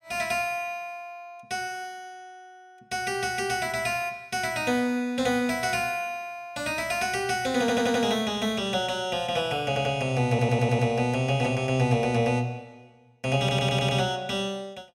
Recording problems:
stutter; 4 times, first at 7.5 s

